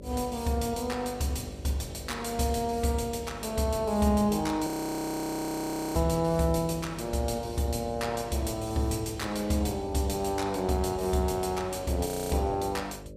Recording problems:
electrical hum; 50 Hz, harmonics up to 600 Hz, SNR 15 dB
audio freezing; at 4.5 s for 1.5 s and at 12 s

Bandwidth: 15.5 kHz